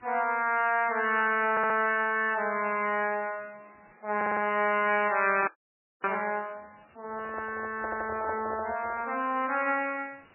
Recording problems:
codec artefacts; MP3, log-spectral distance 6 dB, nothing above 2.5 kHz
hiss; SNR 30 dB
audio stuttering; at 1.5 s, at 4 s and at 8 s
audio freezing; at 5.5 s for 0.5 s
microphone handling noise; from 7 to 9 s; peak -4 dB vs average level

